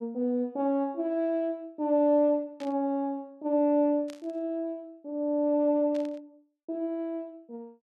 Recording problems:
burst of static; at 2.5 s, at 4 s and at 6 s; peak -15 dB vs average level

